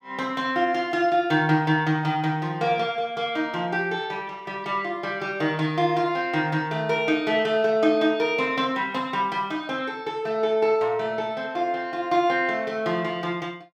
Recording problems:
none

